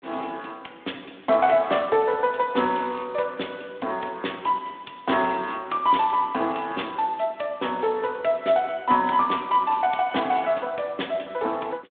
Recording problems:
phone line; 220 Hz to 3.6 kHz, Speex

